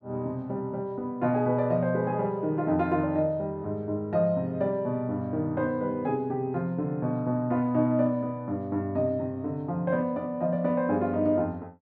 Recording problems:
none

